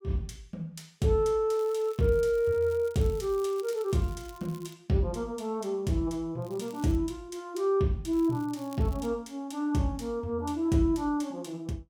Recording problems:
crackling; from 1.5 to 4.5 s, at 6.5 s and at 8 s; loose cable, SNR 25 dB

